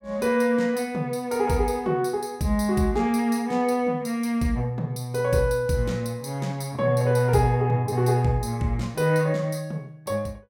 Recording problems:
none

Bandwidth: 16.5 kHz